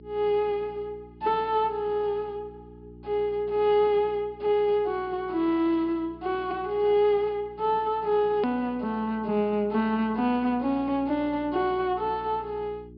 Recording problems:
low-pass filter; nothing above 5.1 kHz
hum; 60 Hz, harmonics up to 420 Hz, SNR 22 dB
hard cut with a click; at 8.5 s

